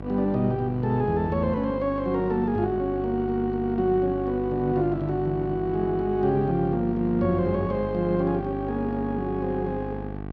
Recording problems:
electrical hum; 50 Hz, harmonics up to 1.6 kHz, SNR 9 dB

